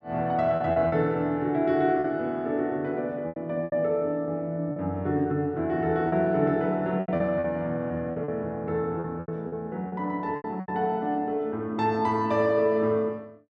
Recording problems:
packet loss; 8% of the sound replaced, filled with repeated pitch periods

